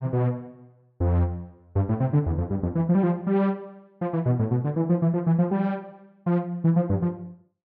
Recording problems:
none

